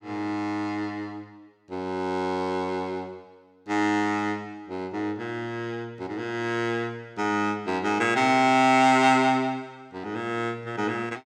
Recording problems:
none

